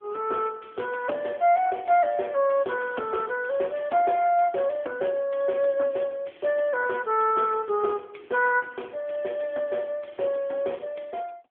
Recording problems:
telephone audio; 280 Hz to 3.3 kHz, AMR-NB

